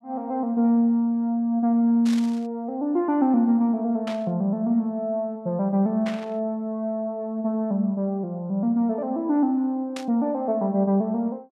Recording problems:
burst of static; 4 times, first at 2 s; peak -8 dB vs average level

